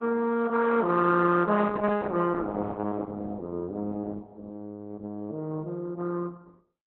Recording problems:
codec artefacts; Opus, log-spectral distance 3 dB, nothing above 4 kHz

